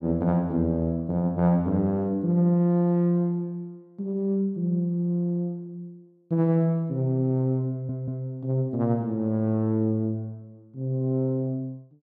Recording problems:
audio stuttering; at 7.5 s

